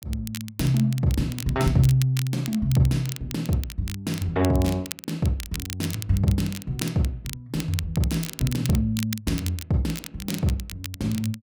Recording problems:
crackling; vinyl, SNR 12 dB

